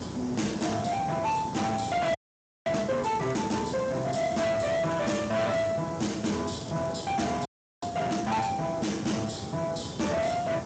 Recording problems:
codec artefacts; Speex, log-spectral distance 9 dB, nothing above 7.8 kHz
distortion; soft clipping, signal-to-distortion ratio 7 dB
hiss; SNR 9 dB
frozen audio; at 2 s for 0.5 s and at 7.5 s
crackle; from 3 to 5 s and from 6.5 to 8.5 s; loose cable, SNR 25 dB

